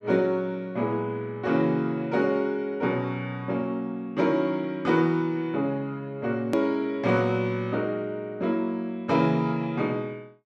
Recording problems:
click at an edit; at 6.5 s

